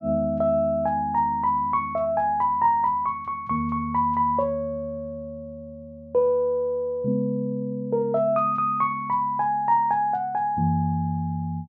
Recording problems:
none

